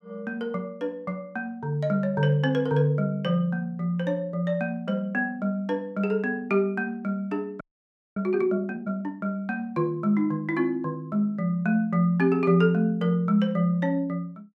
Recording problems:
audio freezing; at 7.5 s for 0.5 s

